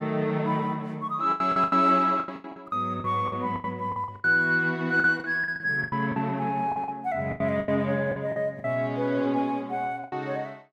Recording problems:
packet loss; 14% of the sound replaced, filled with the last packet

